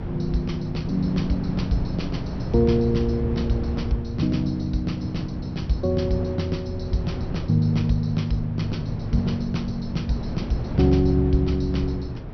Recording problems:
low-pass filter; nothing above 5.9 kHz
hum; 60 Hz, harmonics up to 540 Hz, SNR 27 dB
wind on the microphone; below 240 Hz, SNR 7 dB

